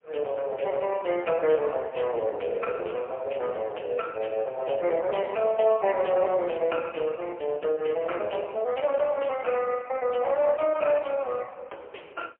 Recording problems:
phone line; 300 Hz to 3.3 kHz, AMR-NB, then MP3

